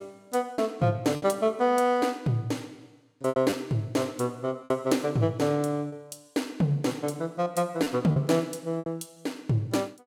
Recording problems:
lost packets; 5% of the sound replaced, filled with repeated pitch periods

